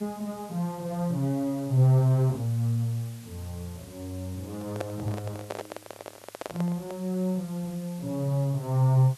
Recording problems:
background hiss; slope 0 dB per octave, SNR 22 dB
handling noise; from 4.5 to 7 s; peak -1 dB vs average level

